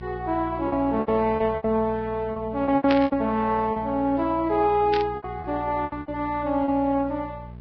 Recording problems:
codec artefacts; Vorbis, log-spectral distance 2 dB
electrical hum; 60 Hz, harmonics up to 660 Hz, SNR 16 dB
lost packets; 11% of the sound replaced, filled with repeated pitch periods
burst of static; at 3 s and at 5 s; peak 0 dB vs average level

